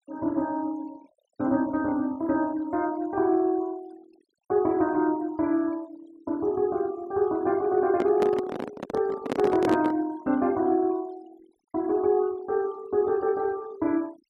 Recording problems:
noise reduction artefacts; signal-to-artefact ratio 24 dB
handling noise; from 8 to 10 s; peak +1 dB vs average level

